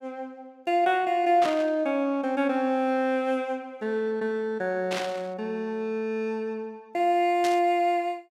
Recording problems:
burst of static; at 1.5 s, at 5 s and at 7.5 s; peak -2 dB vs average level

